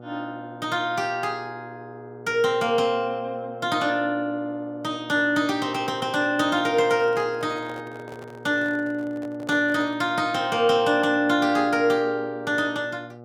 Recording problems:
hum; 60 Hz, harmonics up to 1.3 kHz, SNR 19 dB
microphone handling noise; from 6.5 to 10 s; peak -12 dB vs average level

